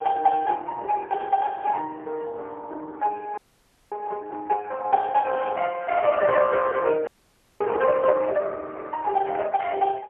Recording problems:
telephone audio; 340 Hz to 2.1 kHz, AMR-NB, then MP3
audio freezing; at 3.5 s for 0.5 s and at 7 s for 0.5 s

